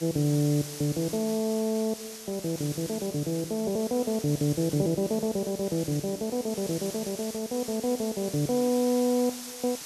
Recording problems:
hiss; SNR 11 dB

